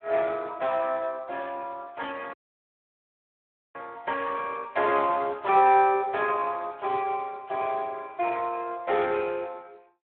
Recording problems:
telephone audio; 340 Hz to 3.3 kHz, Speex
dropout; at 2.5 s for 1.5 s

